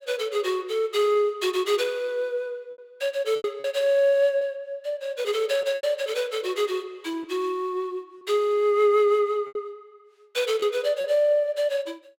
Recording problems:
packet loss; 4% of the sound replaced, filled with repeated pitch periods

